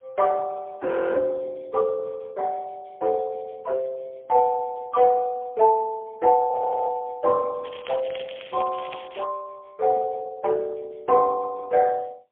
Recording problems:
telephone audio; 320 Hz to 2.6 kHz, AMR-NB, then MP3
audio freezing; at 1 s and at 6.5 s
crackling; from 7.5 to 9 s; loose cable, SNR 19 dB

